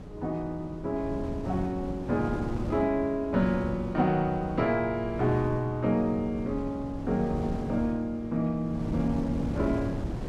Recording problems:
wind on the microphone; below 290 Hz, SNR 8 dB

